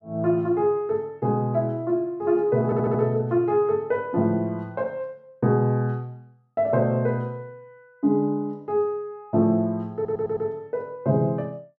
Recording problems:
audio stuttering; at 2.5 s and at 10 s

